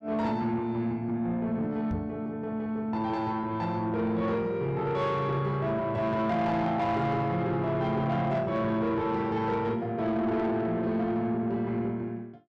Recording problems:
distortion; soft clipping, signal-to-distortion ratio 12 dB
microphone thump; at 2 s; peak -1 dB vs average level

